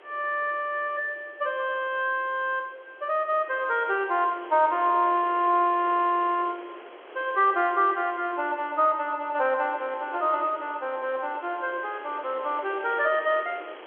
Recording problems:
phone line; 300 Hz to 3.5 kHz, G.711
wind noise; below 1.7 kHz, SNR 19 dB

